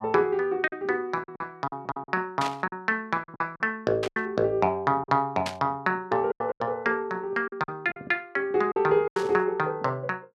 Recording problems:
lost packets; 9% of the sound replaced, filled with silence
static burst; 4 times, first at 2.5 s; peak -1 dB vs average level

